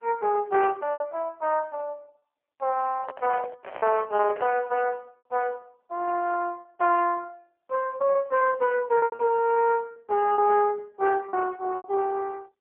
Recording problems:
telephone audio; 340 Hz to 2.8 kHz, AMR-NB
packet loss; 8% of the sound replaced, filled with repeated pitch periods
handling noise; from 3 to 4.5 s; peak -4 dB vs average level

